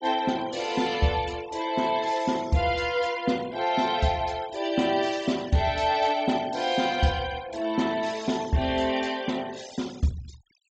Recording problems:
treble cut off; nothing above 8 kHz
denoising artefacts; signal-to-artefact ratio 19 dB

